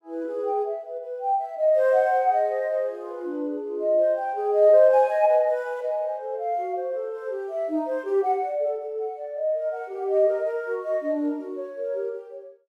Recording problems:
none

